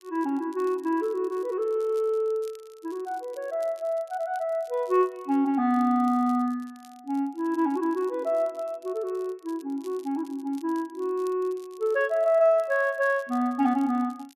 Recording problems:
crackle; vinyl, SNR 29 dB

